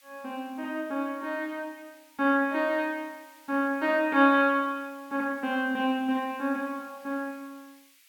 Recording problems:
hiss; SNR 28 dB

